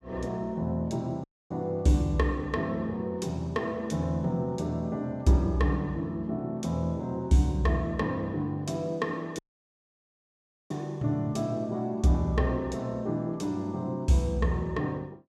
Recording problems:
dropout; at 1 s and at 9.5 s for 1.5 s

